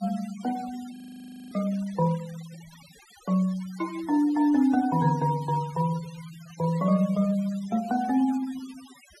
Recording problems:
denoising artefacts; signal-to-artefact ratio 21 dB
audio freezing; at 1 s for 0.5 s

